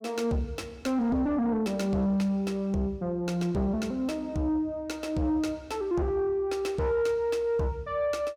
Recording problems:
distortion; soft clipping, signal-to-distortion ratio 12 dB

